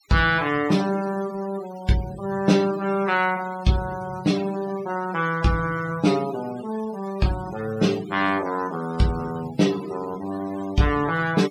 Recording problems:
denoising artefacts; signal-to-artefact ratio 17 dB

